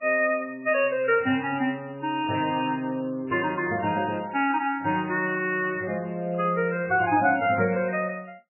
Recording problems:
lossy codec; MP3, log-spectral distance 3 dB, nothing above 2.6 kHz

